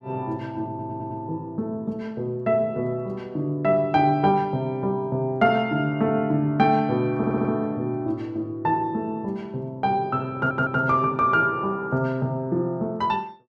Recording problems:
stutter; at 0.5 s, at 7 s and at 10 s

